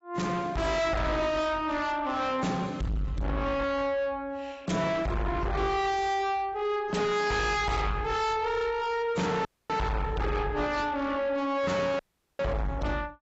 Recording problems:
lossy compression; AAC, log-spectral distance 2 dB, nothing above 7.6 kHz
distortion; soft clipping, signal-to-distortion ratio 6 dB
dropout; at 9.5 s and at 12 s

